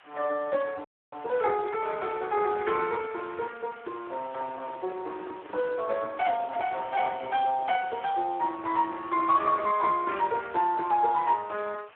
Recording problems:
telephone audio; 320 Hz to 3.2 kHz, Speex
background hiss; SNR 23 dB
audio freezing; at 1 s
microphone handling noise; from 4 to 8 s; peak -12 dB vs average level

